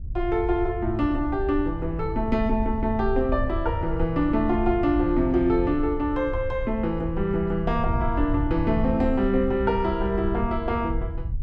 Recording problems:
wind noise; below 84 Hz, SNR 7 dB

